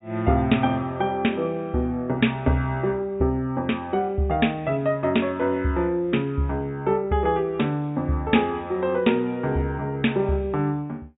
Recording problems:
treble missing; nothing above 4 kHz

